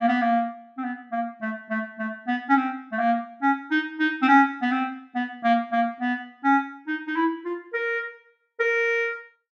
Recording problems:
none

